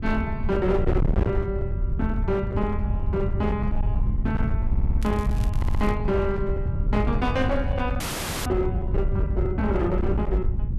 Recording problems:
distorted audio; hard clipping, signal-to-distortion ratio 7 dB
wind noise; below 100 Hz, SNR 0 dB
audio stuttering; at 4.5 s and at 5.5 s
crackling; at 5 s; loose cable, SNR 20 dB
frozen audio; at 8 s

